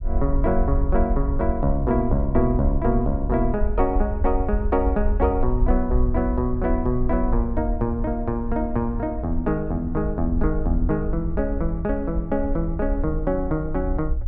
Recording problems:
low-frequency rumble; below 60 Hz, SNR 3 dB

